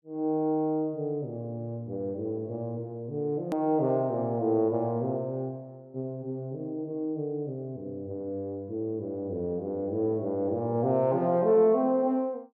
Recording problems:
click at an edit; at 3.5 s

